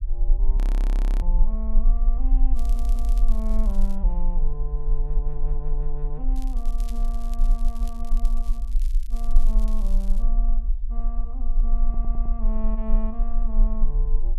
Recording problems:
rumble; below 34 Hz, strongest tone 20 Hz, SNR -12 dB
audio freezing; at 0.5 s for 0.5 s
crackling; from 2.5 to 4 s and from 6.5 to 10 s; loose cable, SNR 13 dB
audio stuttering; at 2.5 s and at 12 s

